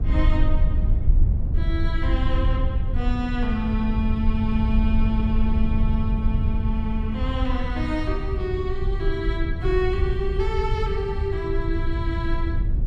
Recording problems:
rumble; below 78 Hz, SNR -3 dB

